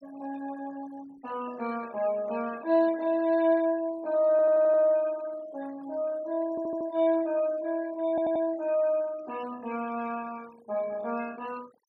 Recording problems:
noise reduction artefacts; signal-to-artefact ratio 23 dB
stutter; at 4.5 s, at 6.5 s and at 8 s

